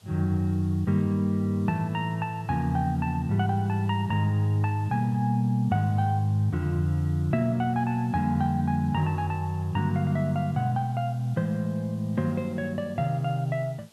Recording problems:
hiss; SNR 30 dB

